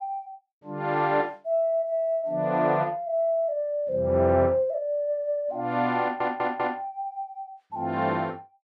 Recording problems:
stutter; at 6 s

